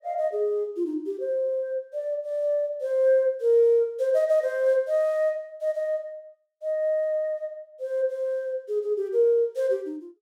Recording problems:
none

